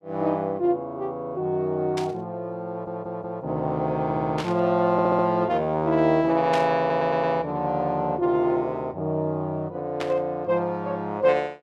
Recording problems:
burst of static; 4 times, first at 2 s; peak -3 dB vs average level
stutter; 4 times, first at 2.5 s

